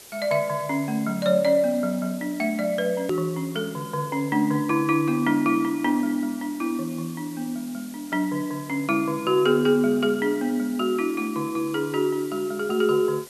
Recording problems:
background hiss; SNR 19 dB
click at an edit; at 3 s

